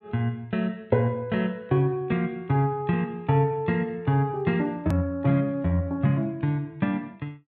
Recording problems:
edit click; at 5 s

